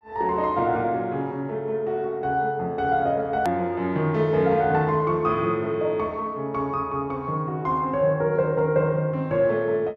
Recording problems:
edit click; at 3.5 s

